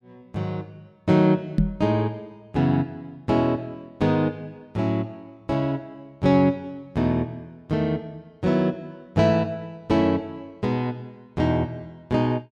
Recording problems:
microphone bump; at 1.5 s; peak +7 dB vs average level

